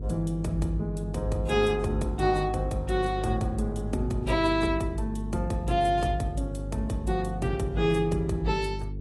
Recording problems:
codec artefacts; AAC, log-spectral distance 2 dB, nothing above 11 kHz
mains hum; 50 Hz, harmonics up to 450 Hz, SNR 7 dB

